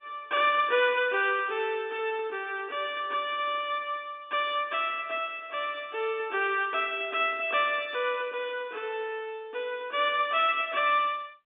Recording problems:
telephone audio; 280 Hz to 3.6 kHz, G.711

